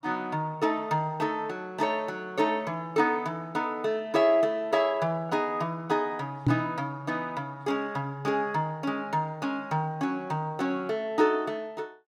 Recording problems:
knock on the microphone; at 6.5 s; peak +8 dB vs average level

